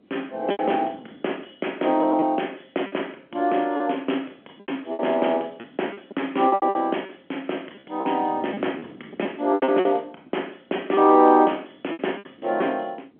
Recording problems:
phone line; 220 Hz to 3.3 kHz, G.711
wind noise; below 510 Hz, SNR 19 dB
lost packets; 10% of the sound replaced, filled with repeated pitch periods

